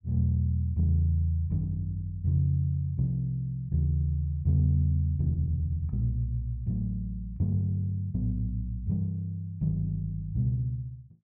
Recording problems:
none

